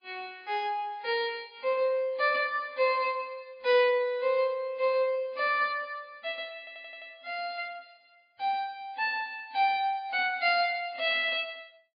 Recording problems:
lossy codec; MP3, log-spectral distance 2 dB, nothing above 4.2 kHz
audio stuttering; at 6.5 s

